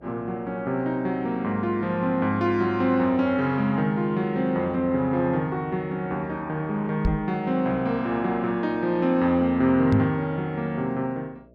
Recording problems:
electrical hum; 60 Hz, harmonics up to 660 Hz, SNR 28 dB
knock on the microphone; at 7 s and at 10 s; peak +5 dB vs average level

